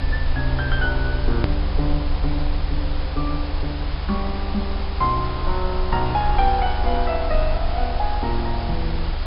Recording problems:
treble cut off; nothing above 5.5 kHz
electrical hum; 50 Hz, harmonics up to 450 Hz, SNR 17 dB
hiss; SNR 8 dB
low-frequency rumble; below 72 Hz, strongest tone 22 Hz, SNR 1 dB
edit click; at 1.5 s

